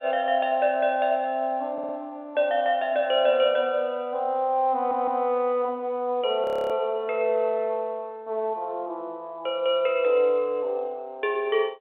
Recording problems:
telephone audio; 300 Hz to 3.4 kHz, G.711
audio stuttering; at 1.5 s and at 5 s
frozen audio; at 6.5 s

